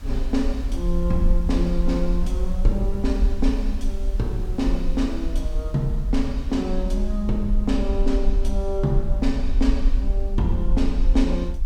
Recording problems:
background hiss; SNR 25 dB
rumble; below 48 Hz, SNR 0 dB

